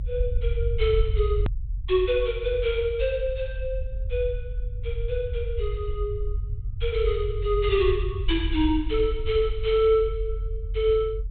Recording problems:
treble cut off; nothing above 4 kHz
rumble; below 68 Hz, strongest tone 44 Hz, SNR 5 dB
click at an edit; at 1.5 s

